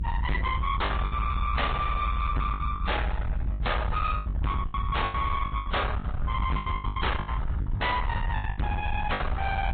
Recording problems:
low-pass filter; nothing above 4 kHz
lossy compression; MP3, then AAC, log-spectral distance 3 dB
distortion; soft clipping, signal-to-distortion ratio 7 dB
rumble; below 140 Hz, SNR 2 dB
packet loss; 14% of the sound replaced, filled with the last packet

